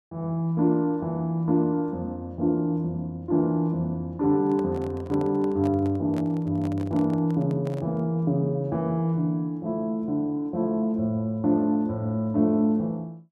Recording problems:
handling noise; from 4.5 to 8 s; peak -8 dB vs average level

